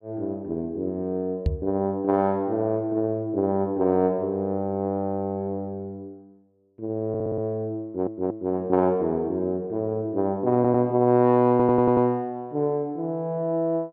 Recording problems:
knock on the microphone; at 1.5 s; peak +4 dB vs average level
audio stuttering; 4 times, first at 7 s

